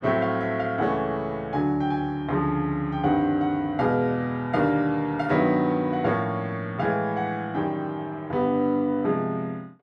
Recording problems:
none

